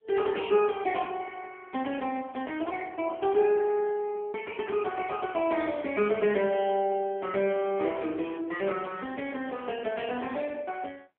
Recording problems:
telephone audio; 260 Hz to 3.3 kHz, AMR-NB

